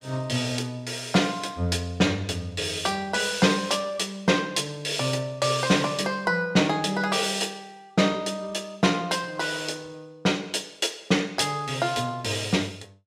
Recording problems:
none

